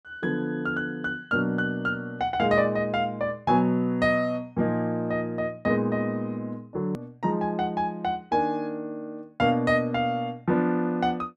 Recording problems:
hard cut with a click; at 7 s

